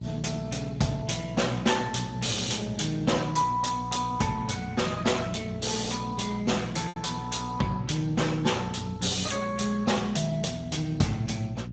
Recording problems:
lossy compression; Speex, log-spectral distance 5 dB, nothing above 7.6 kHz
hum; 60 Hz, harmonics up to 600 Hz, SNR 9 dB
lost packets; 0.7% of the sound replaced, filled with repeated pitch periods

